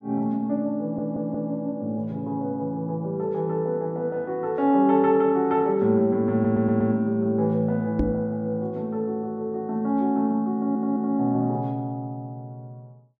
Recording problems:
stutter; at 1 s, at 6.5 s and at 11 s
knock on the microphone; at 8 s; peak +3 dB vs average level

